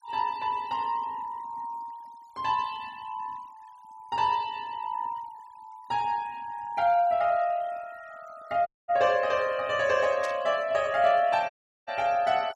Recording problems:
denoising artefacts; signal-to-artefact ratio 25 dB
dropout; at 8.5 s and at 12 s
static burst; at 10 s; peak -8 dB vs average level

